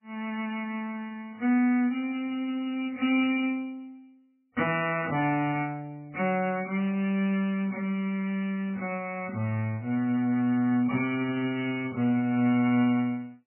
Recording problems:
codec artefacts; MP3, log-spectral distance 2 dB, nothing above 2.8 kHz

